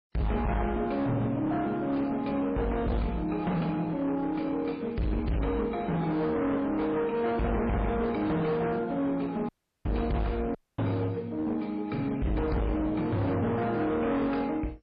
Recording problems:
lossy compression; MP3, then MP2, log-spectral distance 2 dB, nothing above 4.8 kHz
distortion; hard clipping, uneven, signal-to-distortion ratio 7 dB
dropout; at 9.5 s and at 11 s

